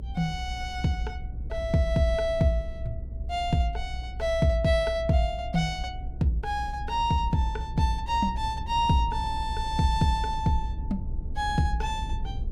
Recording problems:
rumble; below 70 Hz, SNR 8 dB

